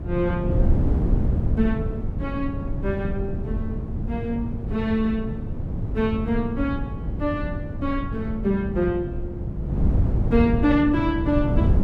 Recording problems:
wind on the microphone; below 160 Hz, SNR 1 dB

